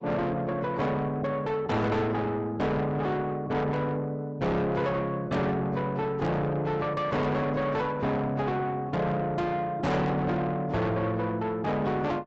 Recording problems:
lossy codec; AAC, log-spectral distance 2 dB, nothing above 7.8 kHz
distorted audio; soft clipping, signal-to-distortion ratio 7 dB

